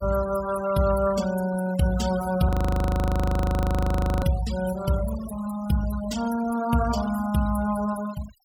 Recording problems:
noise reduction artefacts; signal-to-artefact ratio 14 dB
audio freezing; at 2.5 s for 1.5 s

